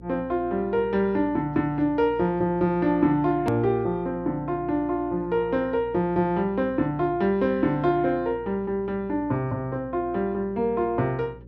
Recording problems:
electrical hum; 60 Hz, harmonics up to 540 Hz, SNR 21 dB
hard cut with a click; at 3.5 s

